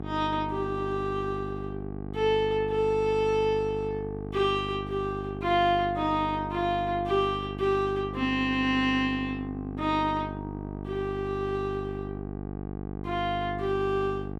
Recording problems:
hum; 50 Hz, harmonics up to 1.3 kHz, SNR 8 dB

